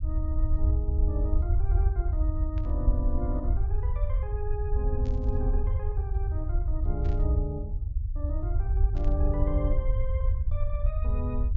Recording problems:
low-pass filter; nothing above 7.3 kHz
low-frequency rumble; below 72 Hz, SNR -8 dB
burst of static; 4 times, first at 2.5 s; peak -11 dB vs average level

